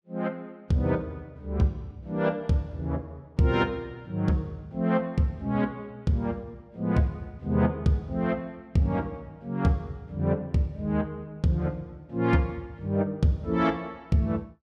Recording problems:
none

